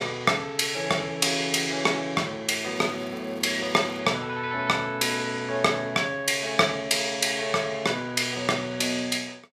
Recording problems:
crackle; from 3 to 4 s; loose cable, SNR 29 dB

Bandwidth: 15 kHz